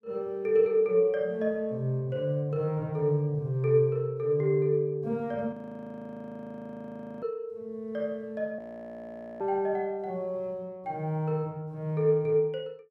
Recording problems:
audio freezing; at 5.5 s for 1.5 s and at 8.5 s for 1 s

